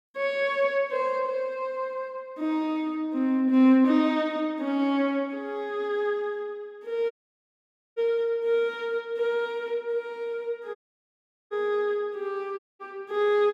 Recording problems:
audio cutting out; at 7 s for 1 s, at 11 s for 1 s and at 13 s

